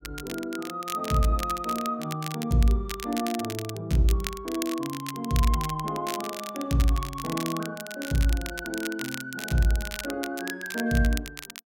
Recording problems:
crackling; vinyl, SNR 10 dB

